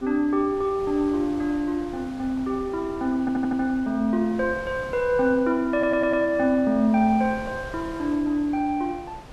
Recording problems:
wind on the microphone; below 930 Hz, SNR 18 dB
audio stuttering; at 3 s and at 5.5 s

